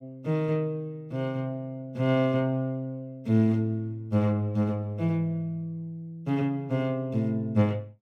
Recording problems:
none

